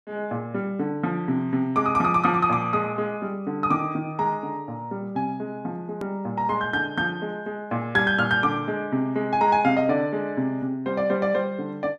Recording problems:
click at an edit; at 6 s

